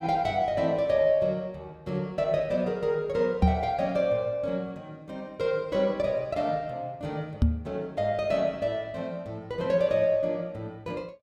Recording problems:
microphone bump; at 3.5 s and at 7.5 s; peak +9 dB vs average level

